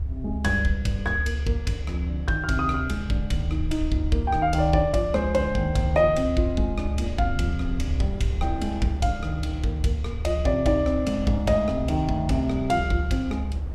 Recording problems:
rumble; below 74 Hz, strongest tone 72 Hz, SNR 6 dB
wind on the microphone; below 130 Hz, SNR 16 dB

